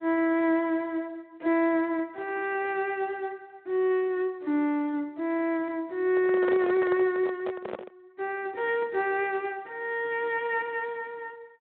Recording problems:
telephone audio; 190 Hz to 3.6 kHz, Speex
handling noise; from 6 to 8 s; peak -1 dB vs average level

